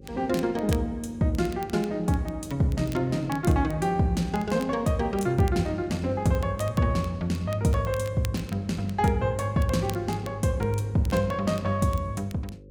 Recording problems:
electrical hum; 50 Hz, harmonics up to 550 Hz, SNR 19 dB
crackle; vinyl, SNR 21 dB

